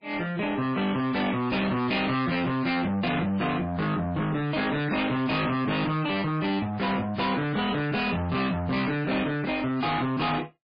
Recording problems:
codec artefacts; MP3, log-spectral distance 4 dB, nothing above 4.5 kHz
distortion; soft clipping, signal-to-distortion ratio 7 dB

